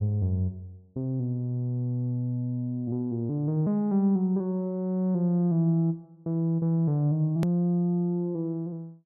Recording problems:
click at an edit; at 7.5 s

